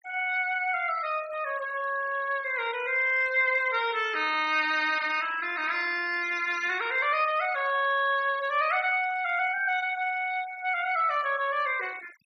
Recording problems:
noise reduction artefacts; signal-to-artefact ratio 20 dB

